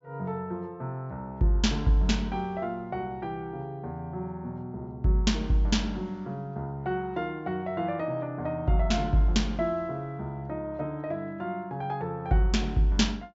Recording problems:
treble missing; nothing above 8 kHz

